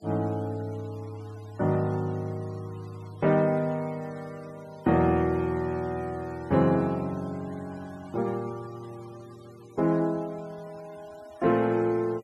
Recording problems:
noise reduction artefacts; signal-to-artefact ratio 25 dB

